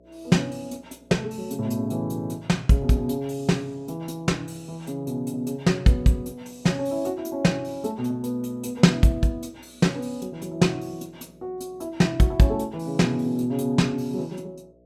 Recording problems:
hum; 60 Hz, harmonics up to 660 Hz, SNR 32 dB

